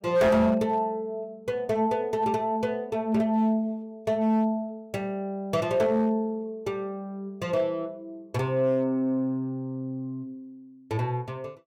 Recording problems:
distortion; hard clipping, signal-to-distortion ratio 12 dB

